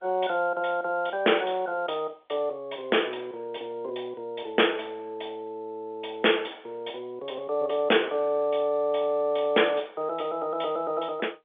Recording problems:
telephone audio; 300 Hz to 3.5 kHz, G.711

